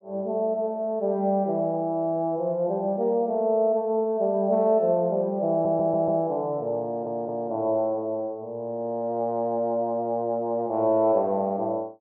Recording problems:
audio stuttering; at 5.5 s and at 7 s

